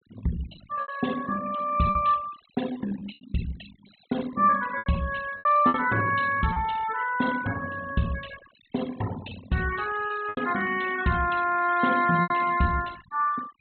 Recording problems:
treble missing; nothing above 4 kHz
denoising artefacts; signal-to-artefact ratio 16 dB
packet loss; 6% of the sound replaced, filled with repeated pitch periods

